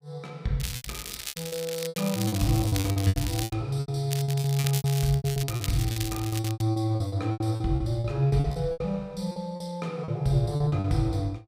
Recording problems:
lost packets; 18% of the sound replaced, filled with repeated pitch periods
crackling; from 0.5 to 3.5 s and from 4 to 6.5 s; loose cable, SNR 8 dB

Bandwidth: 15.5 kHz